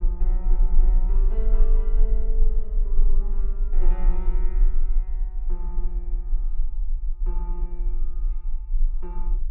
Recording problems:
low-frequency rumble; below 32 Hz, strongest tone 24 Hz, SNR -16 dB

